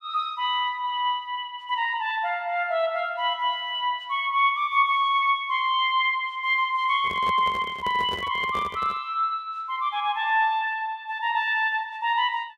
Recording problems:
handling noise; from 7 to 9 s; peak -7 dB vs average level

